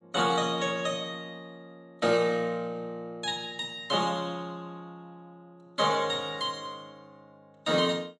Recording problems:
lossy codec; MP3, log-spectral distance 2 dB, nothing above 10.4 kHz

